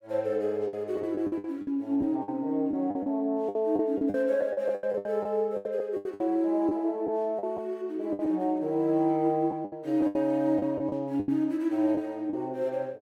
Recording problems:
packet loss; 12% of the sound replaced, filled with the last packet

